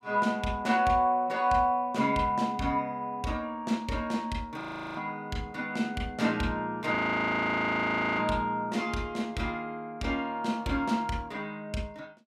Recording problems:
frozen audio; at 4.5 s and at 7 s for 1 s

